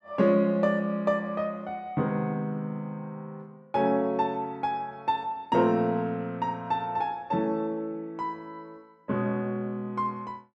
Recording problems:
none

